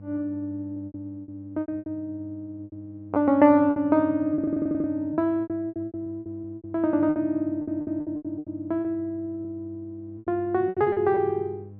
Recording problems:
treble cut off; nothing above 5.5 kHz
hum; 50 Hz, harmonics up to 500 Hz, SNR 19 dB
packet loss; 15% of the sound replaced, filled with repeated pitch periods
audio stuttering; at 4.5 s and at 7.5 s

